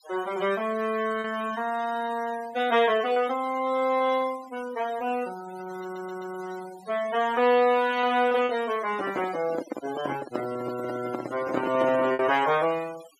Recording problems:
noise reduction artefacts; signal-to-artefact ratio 18 dB
lost packets; 1.9% of the sound replaced, filled with repeated pitch periods
stutter; at 6 s
microphone handling noise; from 9 to 12 s; peak 0 dB vs average level

